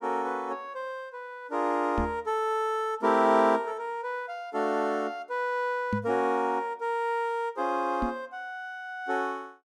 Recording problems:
knock on the microphone; at 2 s, at 6 s and at 8 s; peak +3 dB vs average level

